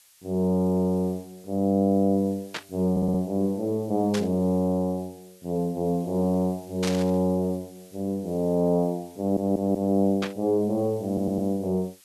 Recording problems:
background hiss; slope +3 dB per octave, SNR 27 dB
burst of static; 4 times, first at 2.5 s; peak -2 dB vs average level
audio stuttering; at 3 s, at 9 s and at 11 s

